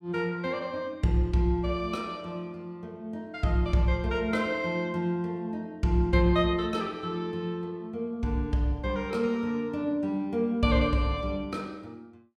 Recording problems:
none

